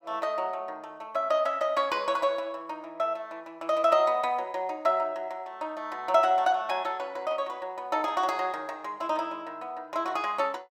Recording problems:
none

